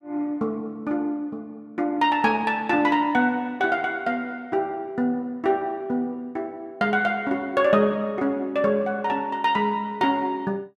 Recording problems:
none

